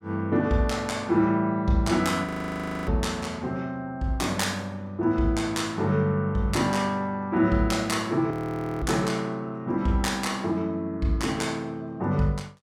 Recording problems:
frozen audio; at 2.5 s for 0.5 s and at 8.5 s for 0.5 s

